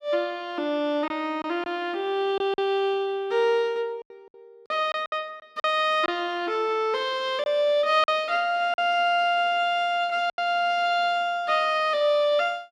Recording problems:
packet loss; 5% of the sound replaced, filled with silence

